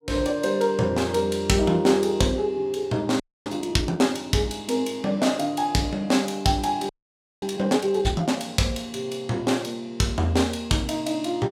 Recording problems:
frozen audio; at 3 s and at 7 s for 0.5 s

